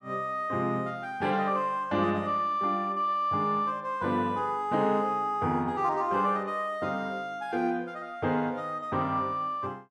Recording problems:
none

